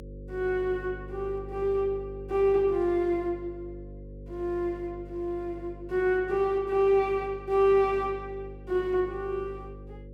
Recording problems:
hum; 50 Hz, harmonics up to 550 Hz, SNR 16 dB

